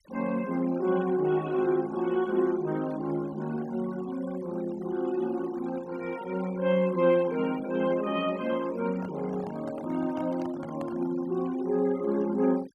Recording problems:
denoising artefacts; signal-to-artefact ratio 20 dB
microphone handling noise; from 9 to 11 s; peak -9 dB vs average level

